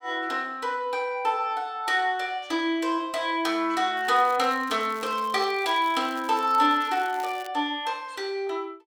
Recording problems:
crackle; from 4 to 7.5 s; loose cable, SNR 22 dB

